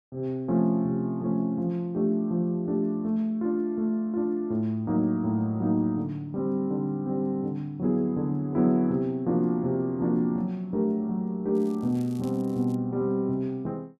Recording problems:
crackle; from 12 to 13 s; loose cable, SNR 28 dB

